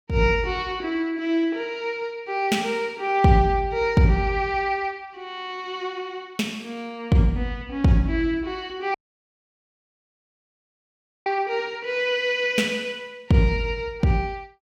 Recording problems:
audio cutting out; at 9 s for 2.5 s

